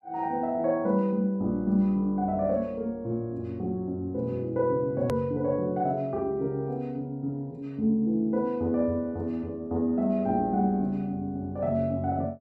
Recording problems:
edit click; at 5 s

